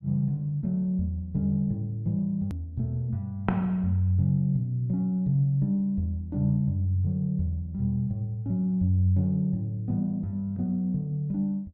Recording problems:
click at an edit; at 2.5 s

